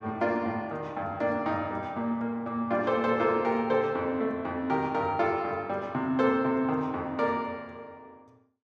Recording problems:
none

